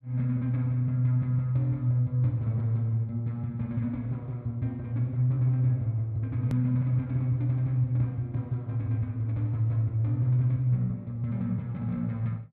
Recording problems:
hard cut with a click; at 6.5 s

